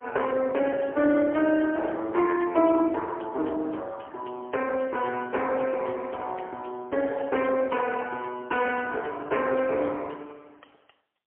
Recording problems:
phone line; 260 Hz to 3.2 kHz, AMR-NB, then MP3

